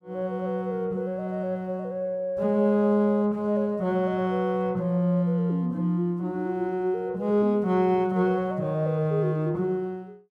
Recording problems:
none

